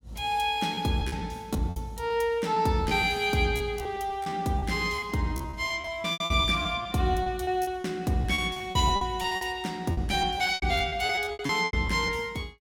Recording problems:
packet loss; 14% of the sound replaced, filled with repeated pitch periods

